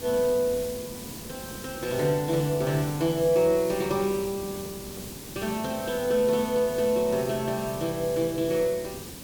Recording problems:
background hiss; SNR 12 dB

